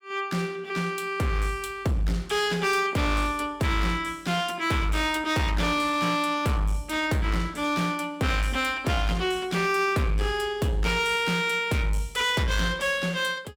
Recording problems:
distorted audio; hard clipping, uneven, signal-to-distortion ratio 10 dB

